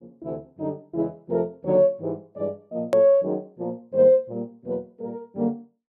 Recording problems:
click at an edit; at 3 s

